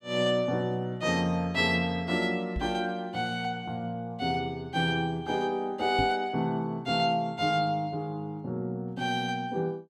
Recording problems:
microphone bump; at 2.5 s and at 6 s; peak +1 dB vs average level

